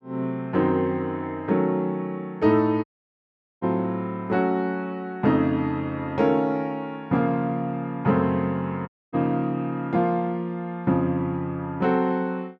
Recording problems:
dropout; at 3 s for 1 s and at 9 s

